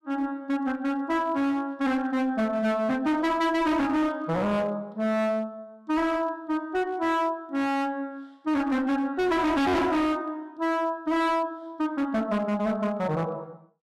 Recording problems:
distortion; hard clipping, uneven, signal-to-distortion ratio 6 dB

